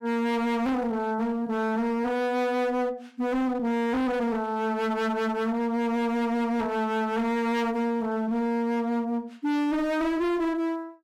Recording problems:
distorted audio; hard clipping, signal-to-distortion ratio 7 dB

